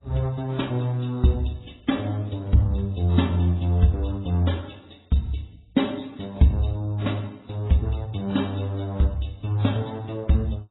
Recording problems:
lossy codec; MP3, then AAC, log-spectral distance 4 dB, nothing above 3.8 kHz

